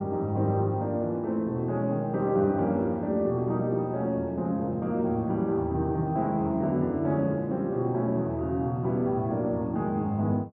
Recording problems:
low-pass filter; nothing above 5.5 kHz

